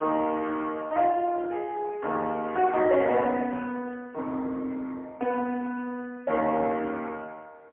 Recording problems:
telephone audio; 280 Hz to 2.8 kHz, AMR-NB, then MP3

